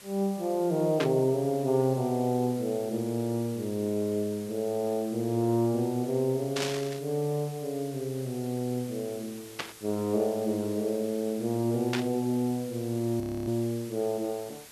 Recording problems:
hiss; slope 0 dB per octave, SNR 18 dB
burst of static; 4 times, first at 1 s; peak +2 dB vs average level
audio freezing; at 13 s

